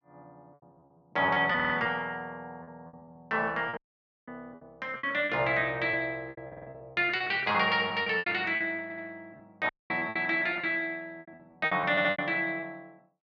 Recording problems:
packet loss; 14% of the sound replaced, filled with repeated pitch periods
stutter; 4 times, first at 1.5 s
dropout; at 4 s and at 9.5 s

